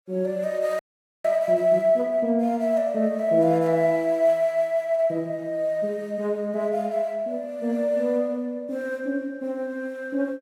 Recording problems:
frozen audio; at 1 s

